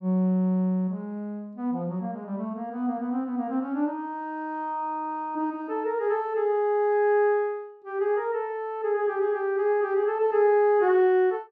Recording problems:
none

